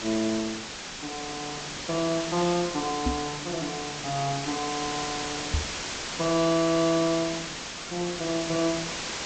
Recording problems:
treble cut off; nothing above 8 kHz
hiss; slope -1 dB per octave, SNR 4 dB
microphone bump; at 3 s and at 5.5 s; peak +5 dB vs average level

